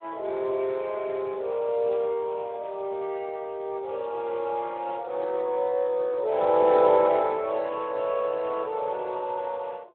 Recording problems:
phone line; 340 Hz to 2.8 kHz, Speex

